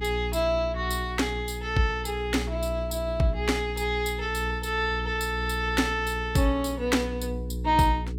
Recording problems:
electrical hum; 60 Hz, harmonics up to 420 Hz, SNR 7 dB

